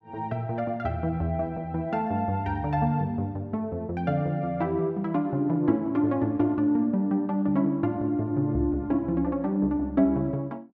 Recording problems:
none

